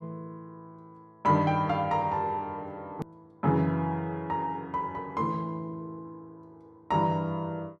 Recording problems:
hard cut with a click; at 3 s

